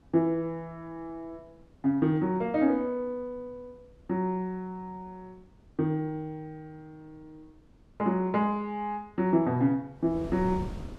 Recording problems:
wind on the microphone; below 260 Hz, SNR 19 dB

